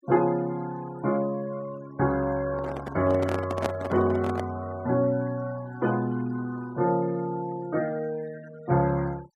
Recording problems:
noise reduction artefacts; signal-to-artefact ratio 22 dB
microphone handling noise; from 2.5 to 4.5 s; peak +3 dB vs average level

